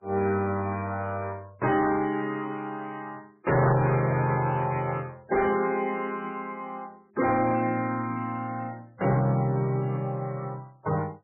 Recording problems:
lossy codec; MP3, then MP3, log-spectral distance 2 dB
distorted audio; soft clipping, signal-to-distortion ratio 11 dB

